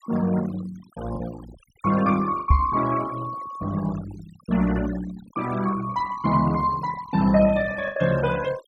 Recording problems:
denoising artefacts; signal-to-artefact ratio 17 dB
packet loss; 2% of the sound replaced, filled with the last packet
microphone thump; at 2.5 s; peak +9 dB vs average level

